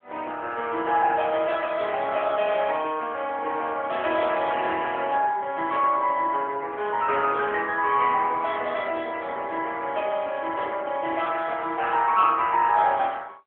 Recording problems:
phone line; 320 Hz to 3.8 kHz, AMR-NB

